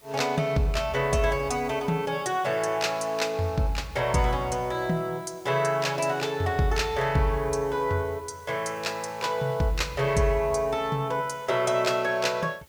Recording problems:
background hiss; slope -2 dB per octave, SNR 26 dB

